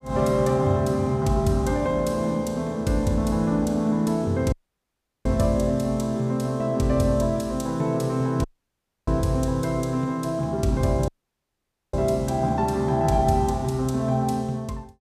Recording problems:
dropout; at 4.5 s for 0.5 s, at 8.5 s for 0.5 s and at 11 s for 1 s

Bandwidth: 15 kHz